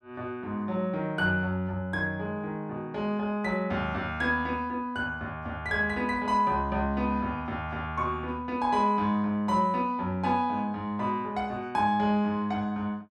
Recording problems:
none

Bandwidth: 12.5 kHz